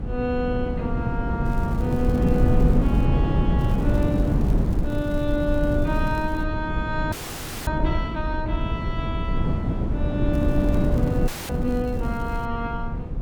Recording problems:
low-frequency rumble; below 86 Hz, SNR 7 dB
wind on the microphone; below 200 Hz, SNR -3 dB
crackle; from 1.5 to 3 s, from 3.5 to 6.5 s and from 10 to 12 s; loose cable, SNR 22 dB
frozen audio; at 7 s for 0.5 s and at 11 s

